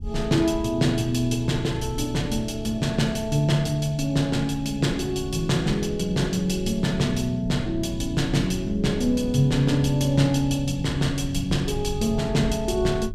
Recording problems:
rumble; below 100 Hz, SNR 12 dB

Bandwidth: 15 kHz